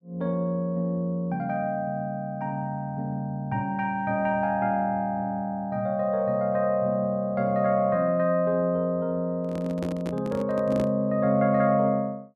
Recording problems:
handling noise; from 9.5 to 11 s; peak -4 dB vs average level

